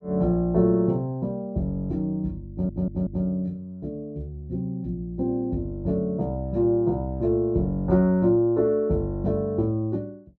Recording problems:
audio stuttering; at 2.5 s

